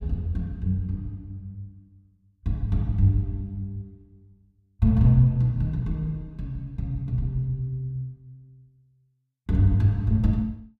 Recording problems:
none

